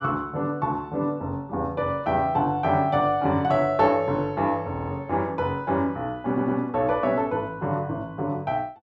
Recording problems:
stutter; at 4.5 s and at 6.5 s

